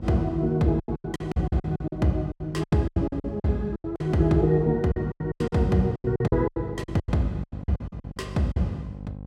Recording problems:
hum; 50 Hz, harmonics up to 800 Hz, SNR 13 dB
lost packets; 20% of the sound replaced, filled with silence

